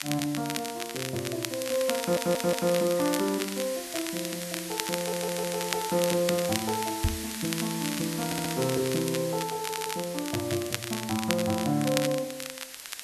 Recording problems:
hiss; slope +2 dB per octave, SNR 8 dB
crackle; vinyl, SNR 6 dB
audio stuttering; 4 times, first at 2 s
microphone thump; at 7 s; peak +6 dB vs average level

